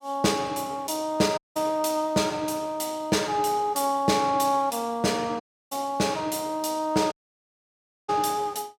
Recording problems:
audio cutting out; at 1.5 s, at 5.5 s and at 7 s for 1 s

